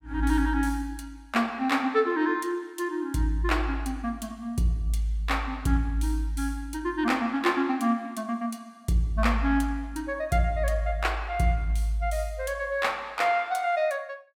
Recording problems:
none

